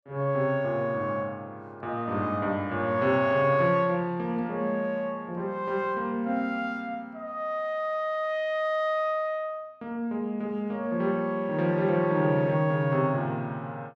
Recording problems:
none

